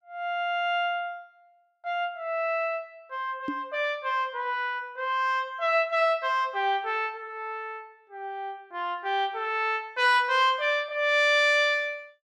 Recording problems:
knock on the microphone; at 3.5 s; peak -2 dB vs average level

